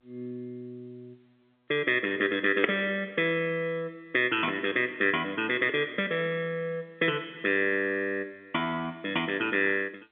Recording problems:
phone line; 300 Hz to 3.4 kHz, G.711

